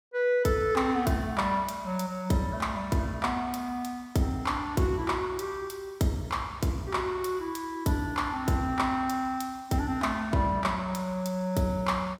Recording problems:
none

